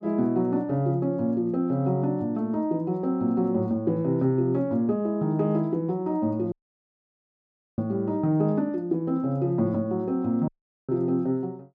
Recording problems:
audio cutting out; at 6.5 s for 1.5 s and at 10 s

